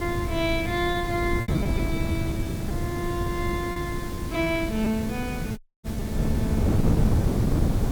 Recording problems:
background hiss; SNR 12 dB
wind noise; below 220 Hz, SNR -2 dB
packet loss; 7% of the sound replaced, filled with repeated pitch periods
dropout; at 5.5 s

